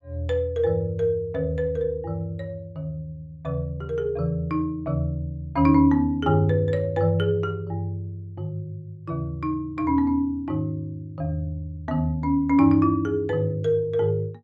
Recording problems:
none

